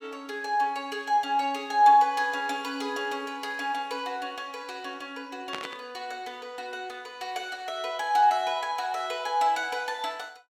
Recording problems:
static burst; at 5.5 s; peak -3 dB vs average level

